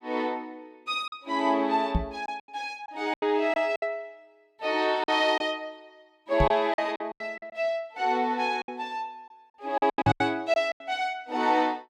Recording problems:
packet loss; 10% of the sound replaced, filled with silence
microphone bump; at 2 s, at 6.5 s and at 10 s; peak +5 dB vs average level

